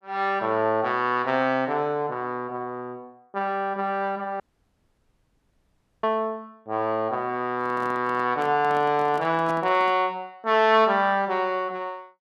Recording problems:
dropout; at 4.5 s for 1.5 s
handling noise; from 7.5 to 10 s; peak -9 dB vs average level

